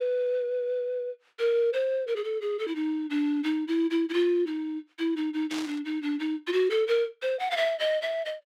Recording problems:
static burst; at 5.5 s; peak -6 dB vs average level

